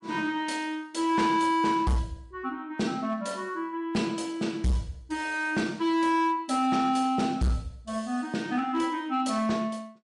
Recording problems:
lossy codec; MP3, log-spectral distance 2 dB, nothing above 11 kHz
distorted audio; hard clipping, signal-to-distortion ratio 10 dB

